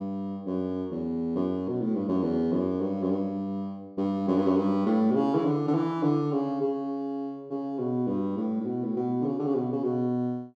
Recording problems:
none

